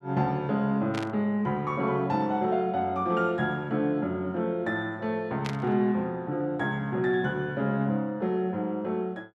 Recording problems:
static burst; at 1 s and at 5.5 s; peak -4 dB vs average level

